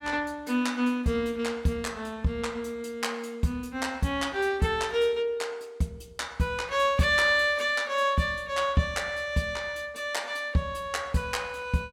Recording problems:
none

